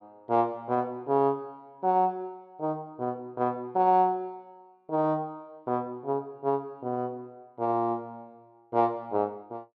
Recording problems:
none

